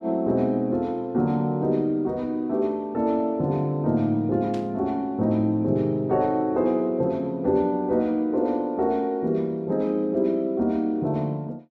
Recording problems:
burst of static; at 4.5 s; peak -15 dB vs average level

